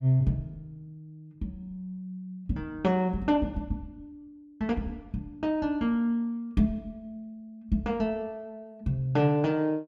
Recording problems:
none

